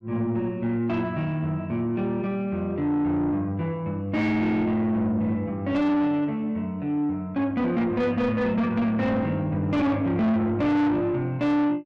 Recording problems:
distortion; soft clipping, signal-to-distortion ratio 7 dB

